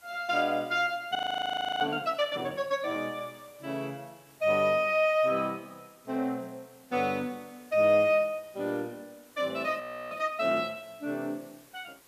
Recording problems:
background hiss; slope -2 dB per octave, SNR 28 dB
frozen audio; at 1 s for 0.5 s and at 10 s

